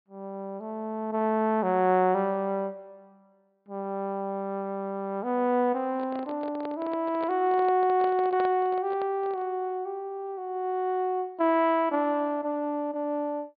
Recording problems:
low-pass filter; nothing above 4.8 kHz
handling noise; from 6 to 9.5 s; peak -6 dB vs average level

